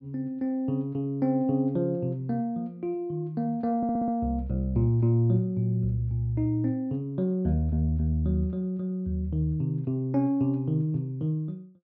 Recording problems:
stutter; at 4 s

